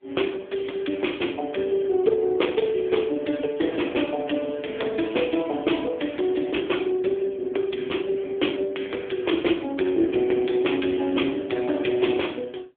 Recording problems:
phone line; 240 Hz to 3.5 kHz, AMR-NB

